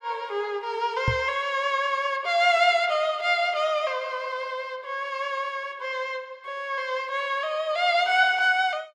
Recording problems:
knock on the microphone; at 1 s; peak +2 dB vs average level

